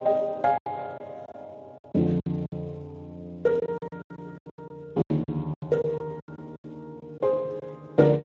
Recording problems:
codec artefacts; Speex, log-spectral distance 2 dB
lost packets; 15% of the sound replaced, filled with silence

